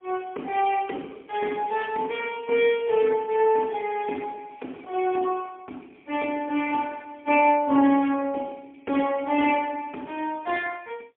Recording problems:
telephone audio; 220 Hz to 3.3 kHz, AMR-NB, then MP3

